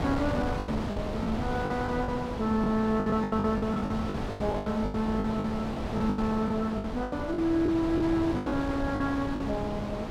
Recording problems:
wind on the microphone; below 720 Hz, SNR 5 dB
lost packets; 15% of the sound replaced, filled with the last packet

